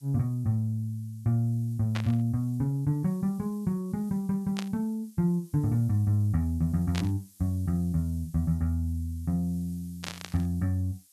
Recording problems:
background hiss; SNR 27 dB
static burst; 4 times, first at 2 s; peak -3 dB vs average level

